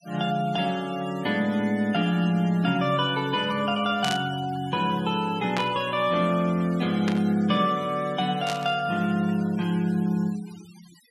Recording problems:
denoising artefacts; signal-to-artefact ratio 20 dB
burst of static; 4 times, first at 4 s; peak -1 dB vs average level

